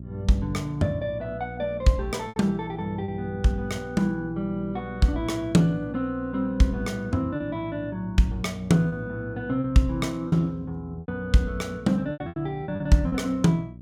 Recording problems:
electrical hum; 60 Hz, harmonics up to 420 Hz, SNR 15 dB
lost packets; 5% of the sound replaced, filled with repeated pitch periods

